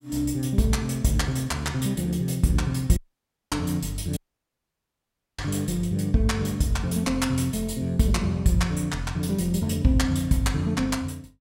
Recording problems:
audio cutting out; at 3 s for 0.5 s and at 4 s for 1 s

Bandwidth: 16.5 kHz